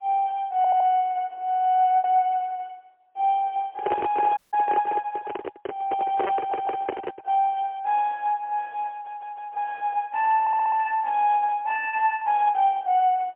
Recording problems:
telephone audio; 370 Hz to 3.3 kHz, AMR-NB, then MP3
packet loss; 2% of the sound replaced, filled with repeated pitch periods
stutter; 4 times, first at 0.5 s
handling noise; from 3.5 to 7.5 s; peak +1 dB vs average level
audio cutting out; at 4.5 s

